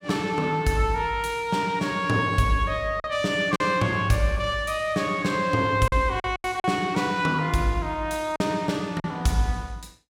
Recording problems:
packet loss; 4% of the sound replaced, filled with silence

